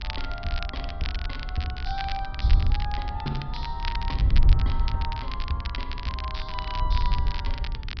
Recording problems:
low-pass filter; nothing above 5.5 kHz
electrical hum; 60 Hz, harmonics up to 420 Hz, SNR 16 dB
wind on the microphone; below 66 Hz, SNR -5 dB
crackling; vinyl, SNR 4 dB

